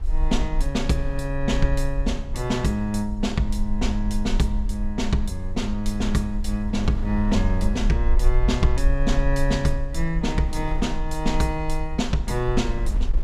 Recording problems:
low-frequency rumble; below 46 Hz, strongest tone 22 Hz, SNR 3 dB
wind noise; below 210 Hz, SNR 18 dB

